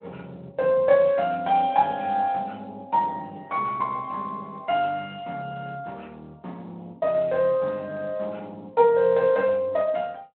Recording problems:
phone line; 300 Hz to 3.2 kHz, Speex

